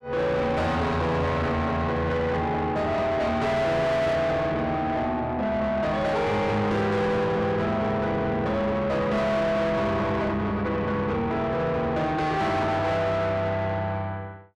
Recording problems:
distortion; soft clipping, signal-to-distortion ratio 7 dB

